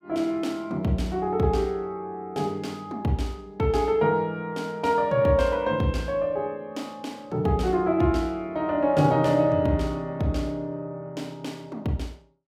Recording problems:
none

